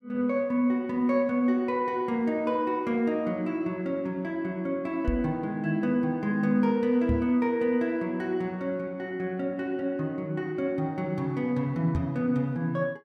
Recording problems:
knock on the microphone; at 5 s, at 7 s and at 12 s; peak +3 dB vs average level

